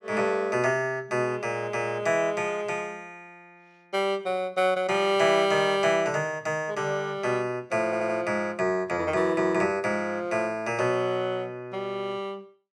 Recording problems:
stutter; at 8 s

